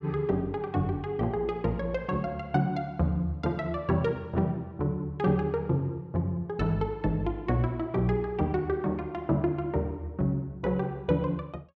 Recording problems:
none

